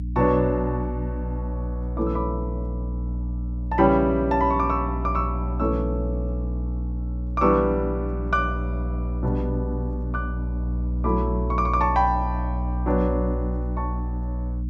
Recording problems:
mains hum; 60 Hz, harmonics up to 300 Hz, SNR 3 dB

